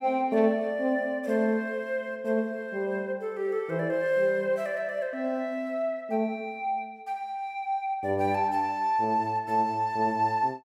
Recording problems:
none

